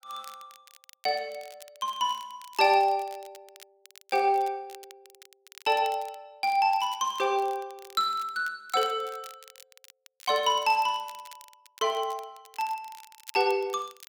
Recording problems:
crackling; vinyl, SNR 23 dB

